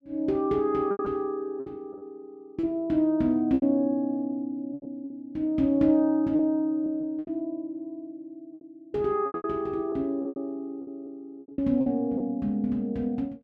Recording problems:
packet loss; 9% of the sound replaced, filled with repeated pitch periods

